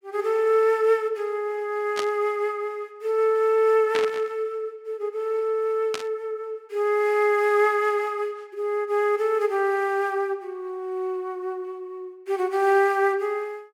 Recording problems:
burst of static; at 2 s, at 4 s and at 6 s; peak -1 dB vs average level

